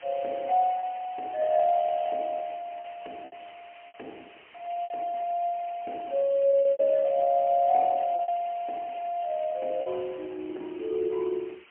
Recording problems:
phone line; 260 Hz to 3.2 kHz, AMR-NB, then MP3
background hiss; SNR 24 dB
packet loss; 6% of the sound replaced, filled with repeated pitch periods

